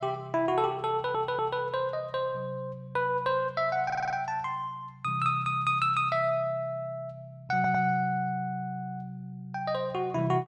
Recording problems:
audio stuttering; at 1 s, at 4 s and at 7.5 s

